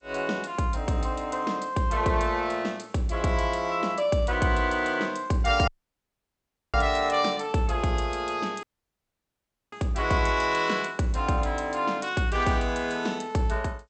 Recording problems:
lossy compression; G.722, log-spectral distance 4 dB, nothing above 8.2 kHz
dropout; at 5.5 s for 1 s and at 8.5 s for 1 s

